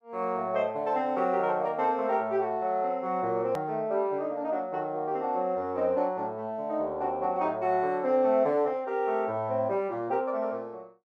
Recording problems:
click at an edit; at 3.5 s

